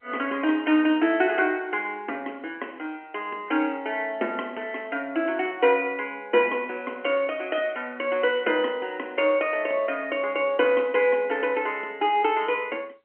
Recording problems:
telephone audio; 240 Hz to 3.2 kHz, G.711

